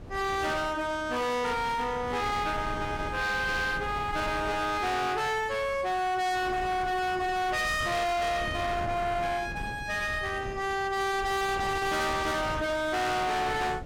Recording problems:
distortion; hard clipping, uneven, signal-to-distortion ratio 6 dB
wind on the microphone; below 700 Hz, SNR 11 dB

